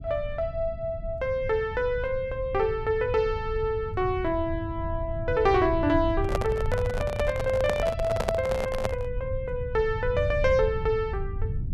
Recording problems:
rumble; below 100 Hz, SNR 7 dB
handling noise; from 6 to 9 s; peak +3 dB vs average level

